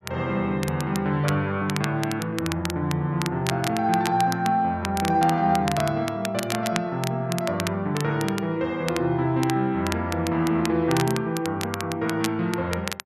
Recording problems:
crackling; vinyl, SNR 10 dB

